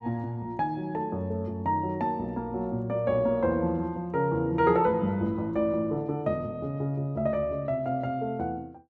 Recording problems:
none

